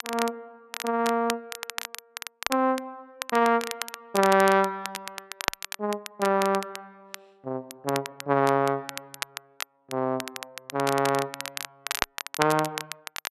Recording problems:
crackle; vinyl, SNR 9 dB

